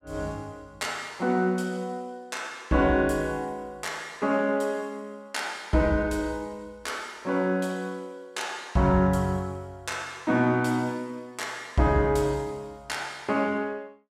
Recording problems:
none

